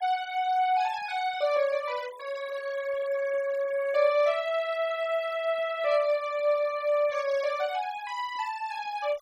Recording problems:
noise reduction artefacts; signal-to-artefact ratio 18 dB

